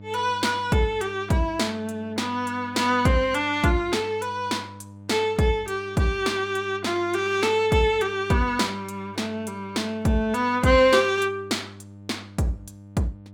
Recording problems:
hum; 50 Hz, harmonics up to 900 Hz, SNR 20 dB

